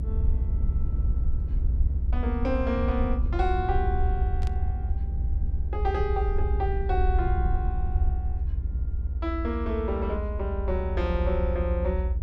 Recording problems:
hum; 50 Hz, harmonics up to 1.5 kHz, SNR 23 dB
low-frequency rumble; below 76 Hz, SNR -3 dB
static burst; at 4.5 s; peak -11 dB vs average level

